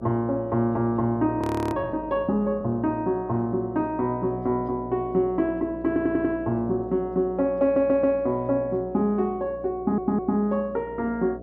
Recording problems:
hum; 60 Hz, harmonics up to 720 Hz, SNR 17 dB
frozen audio; at 1.5 s
stutter; at 6 s, at 7.5 s and at 10 s

